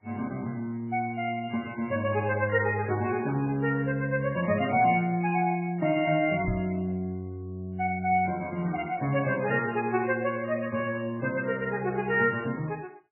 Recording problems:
lossy compression; MP3, log-spectral distance 3 dB
microphone thump; at 6.5 s; peak +1 dB vs average level

